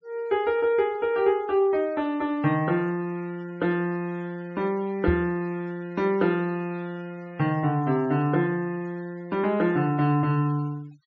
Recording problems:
low-pass filter; nothing above 7.2 kHz
noise reduction artefacts; signal-to-artefact ratio 27 dB
microphone thump; at 5 s; peak +3 dB vs average level

